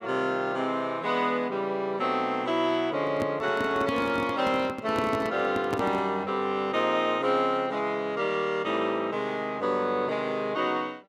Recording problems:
microphone handling noise; from 3 to 6 s; peak 0 dB vs average level

